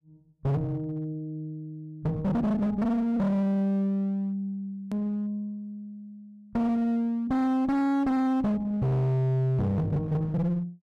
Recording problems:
distortion; hard clipping, uneven, signal-to-distortion ratio 5 dB
hard cut with a click; at 5 s

